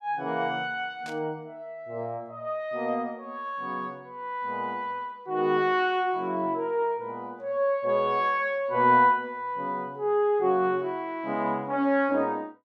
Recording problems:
static burst; at 1 s; peak -12 dB vs average level

